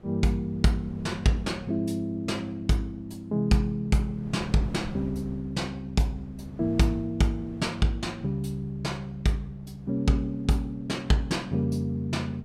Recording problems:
wind noise; below 320 Hz, SNR 19 dB

